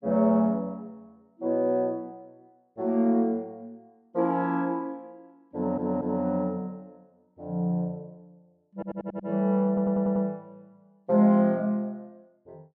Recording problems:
stutter; at 5.5 s, at 8.5 s and at 9.5 s

